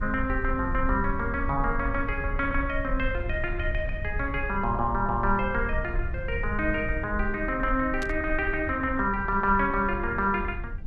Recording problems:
low-frequency rumble; below 66 Hz, SNR 7 dB
static burst; at 8 s; peak -7 dB vs average level

